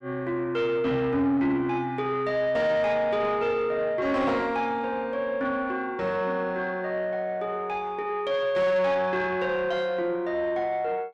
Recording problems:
distortion; soft clipping, signal-to-distortion ratio 11 dB

